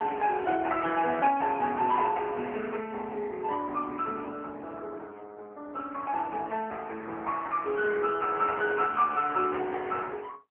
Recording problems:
telephone audio; 260 Hz to 3.1 kHz, AMR-NB

